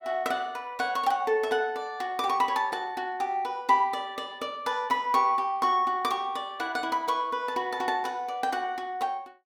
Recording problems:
none

